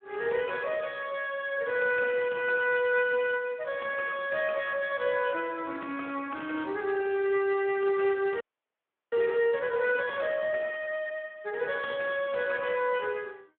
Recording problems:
telephone audio; 280 Hz to 3.9 kHz, Speex
frozen audio; at 8.5 s for 0.5 s

